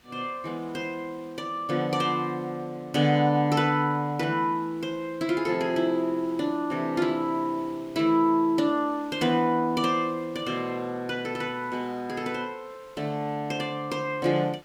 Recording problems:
background hiss; SNR 28 dB

